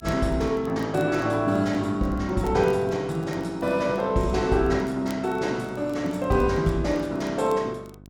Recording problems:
hum; 50 Hz, harmonics up to 750 Hz, SNR 22 dB
crackling; vinyl, SNR 29 dB

